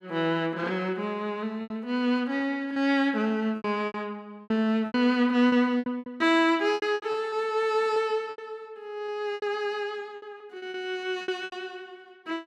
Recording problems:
packet loss; 11% of the sound replaced, filled with repeated pitch periods

